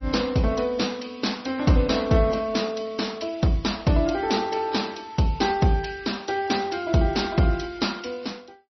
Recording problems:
lossy compression; AAC, then MP3, log-spectral distance 6 dB, nothing above 5.8 kHz

